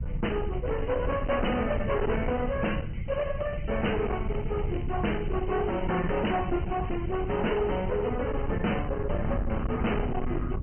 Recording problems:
low-pass filter; nothing above 3 kHz
lossy compression; Opus, log-spectral distance 5 dB
distorted audio; hard clipping, uneven, signal-to-distortion ratio 7 dB
low-frequency rumble; below 160 Hz, SNR 5 dB
crackle; from 0.5 to 2.5 s and from 3 to 8 s; loose cable, SNR 26 dB

